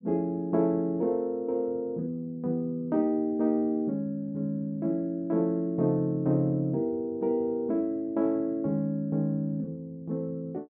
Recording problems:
low-pass filter; nothing above 5.5 kHz

